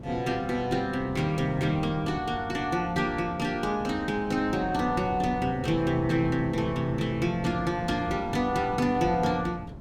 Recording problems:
wind noise; below 270 Hz, SNR 12 dB

